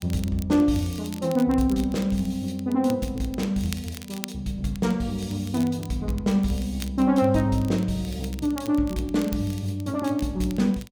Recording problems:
crackling; vinyl, SNR 19 dB

